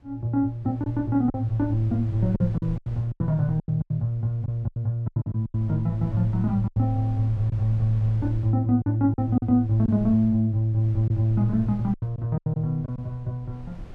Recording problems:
wind on the microphone; below 88 Hz, SNR 19 dB
packet loss; 9% of the sound replaced, filled with silence

